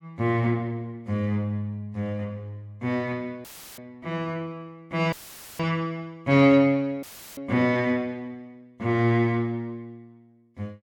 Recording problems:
audio cutting out; at 3.5 s, at 5 s and at 7 s; filled with static

